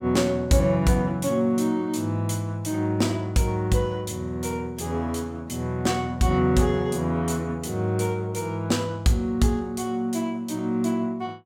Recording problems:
none

